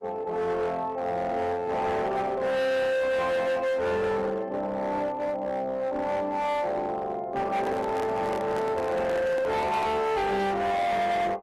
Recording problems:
lossy codec; Opus, log-spectral distance 2 dB, nothing above 13.1 kHz
distortion; hard clipping, uneven, signal-to-distortion ratio 7 dB
microphone handling noise; from 7.5 to 10 s; peak -3 dB vs average level

